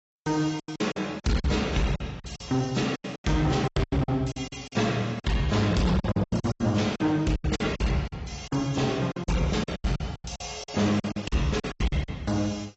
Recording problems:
lossy codec; AAC, log-spectral distance 4 dB, nothing above 7.6 kHz
distorted audio; hard clipping, signal-to-distortion ratio 10 dB
packet loss; 17% of the sound replaced, filled with silence

